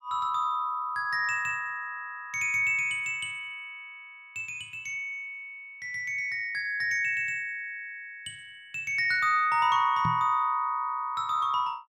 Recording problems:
knock on the microphone; at 10 s; peak -1 dB vs average level

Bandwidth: 15.5 kHz